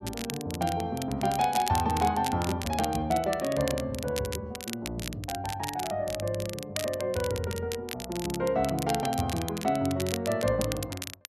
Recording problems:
crackle; vinyl, SNR 9 dB

